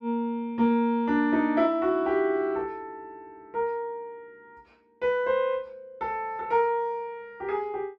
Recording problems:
none

